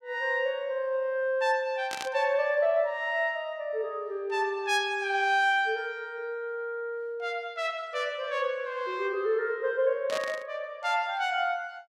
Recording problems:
burst of static; at 2 s and at 10 s; peak -3 dB vs average level

